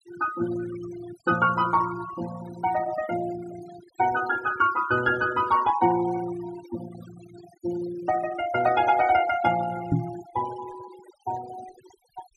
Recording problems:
noise reduction artefacts; signal-to-artefact ratio 15 dB
microphone thump; at 10 s; peak +6 dB vs average level

